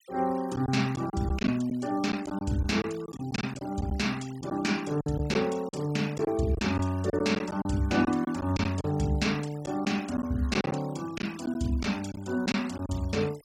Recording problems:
noise reduction artefacts; signal-to-artefact ratio 20 dB
packet loss; 8% of the sound replaced, filled with silence

